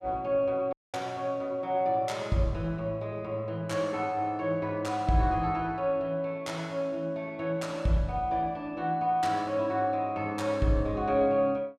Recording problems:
dropout; at 0.5 s

